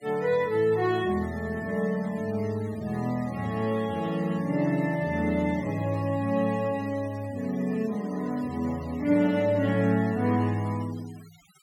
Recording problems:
noise reduction artefacts; signal-to-artefact ratio 21 dB

